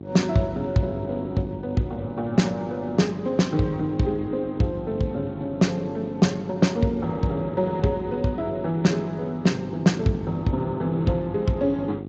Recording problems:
lossy codec; Speex, log-spectral distance 2 dB, nothing above 17.1 kHz
electrical hum; 50 Hz, harmonics up to 800 Hz, SNR 12 dB

